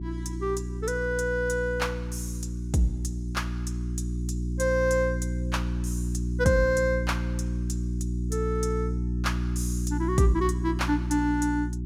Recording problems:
electrical hum; 60 Hz, harmonics up to 360 Hz, SNR 2 dB

